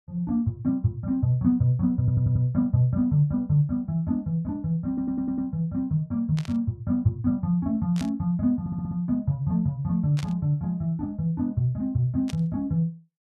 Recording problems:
audio stuttering; at 2 s, at 5 s and at 8.5 s
static burst; 4 times, first at 6.5 s; peak -9 dB vs average level

